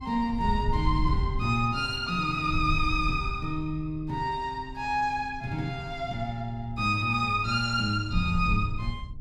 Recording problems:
wind noise; below 88 Hz, SNR 7 dB

